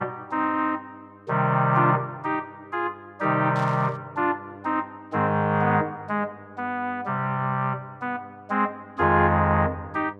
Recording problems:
mains hum; 50 Hz, harmonics up to 1.6 kHz, SNR 24 dB
static burst; at 3.5 s; peak -13 dB vs average level

